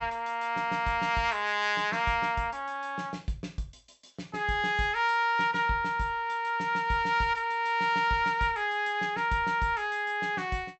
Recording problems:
low-pass filter; nothing above 7.9 kHz

